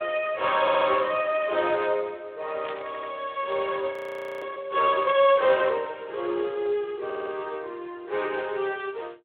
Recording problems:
phone line; 320 Hz to 3.7 kHz, Speex
stutter; at 0.5 s, at 3 s and at 7 s
burst of static; at 2.5 s and at 5.5 s; peak -8 dB vs average level
audio freezing; at 4 s for 0.5 s

